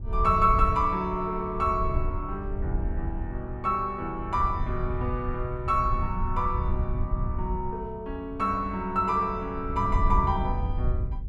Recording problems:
wind noise; below 86 Hz, SNR 4 dB

